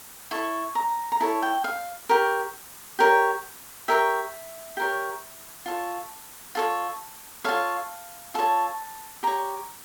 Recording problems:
background hiss; SNR 16 dB

